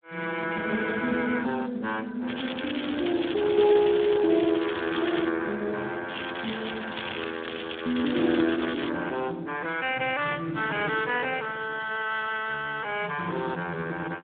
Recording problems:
phone line; 220 Hz to 3.6 kHz, Speex
crackle; from 2.5 to 5.5 s and from 6 to 9 s; loose cable, SNR 8 dB

